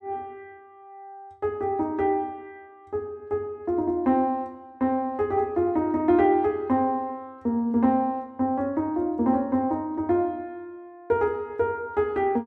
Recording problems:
none

